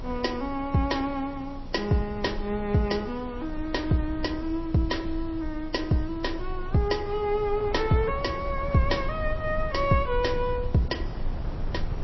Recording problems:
lossy compression; MP3, log-spectral distance 4 dB, nothing above 5.7 kHz
electrical hum; 60 Hz, harmonics up to 840 Hz, SNR 22 dB
background hiss; SNR 29 dB
rumble; below 68 Hz, strongest tone 22 Hz, SNR 11 dB
wind on the microphone; below 640 Hz, SNR 16 dB

